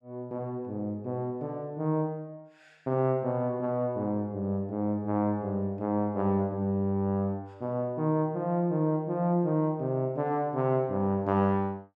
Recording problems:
none

